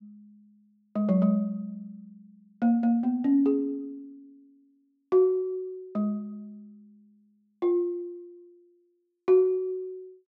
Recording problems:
none

